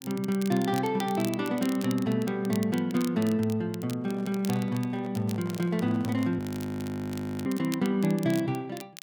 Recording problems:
crackling; vinyl, SNR 16 dB
microphone handling noise; from 4 to 6.5 s; peak -12 dB vs average level
audio freezing; at 6.5 s for 1 s

